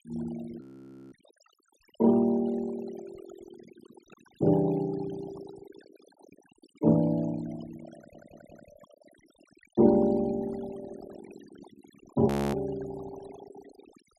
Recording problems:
noise reduction artefacts; signal-to-artefact ratio 17 dB
audio freezing; at 0.5 s for 0.5 s and at 12 s
burst of static; at 4 s and at 12 s; peak -27 dB vs average level
stutter; at 8 s

